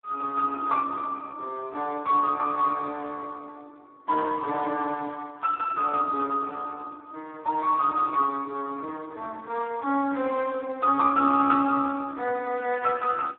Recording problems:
phone line; 260 Hz to 2.6 kHz, Speex

